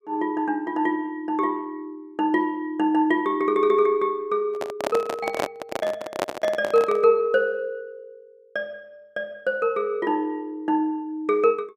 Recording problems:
microphone handling noise; from 4.5 to 7 s; peak +2 dB vs average level

